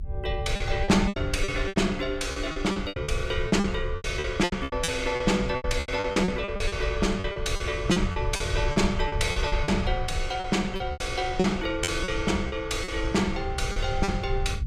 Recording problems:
rumble; below 88 Hz, SNR 7 dB
lost packets; 15% of the sound replaced, filled with repeated pitch periods

